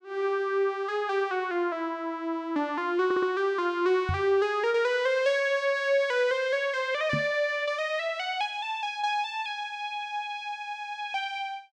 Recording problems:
audio stuttering; at 3 s
knock on the microphone; at 4 s and at 7 s; peak +1 dB vs average level

